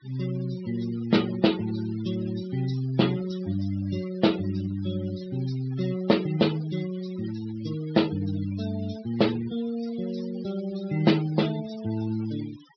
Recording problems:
low-pass filter; nothing above 5.5 kHz
noise reduction artefacts; signal-to-artefact ratio 16 dB

